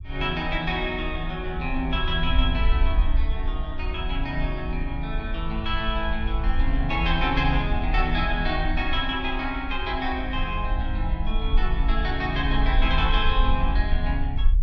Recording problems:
low-frequency rumble; below 54 Hz, SNR 1 dB

